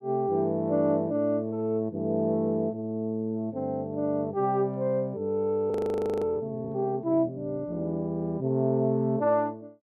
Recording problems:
frozen audio; at 5.5 s for 0.5 s

